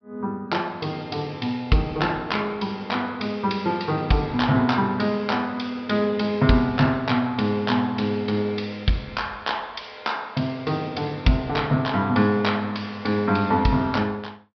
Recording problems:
low-pass filter; nothing above 5.5 kHz

